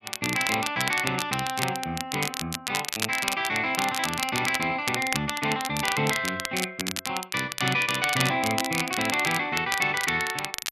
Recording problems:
crackling; vinyl, SNR 5 dB

